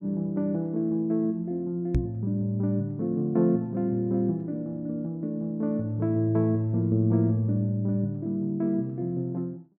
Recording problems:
knock on the microphone; at 2 s; peak +6 dB vs average level

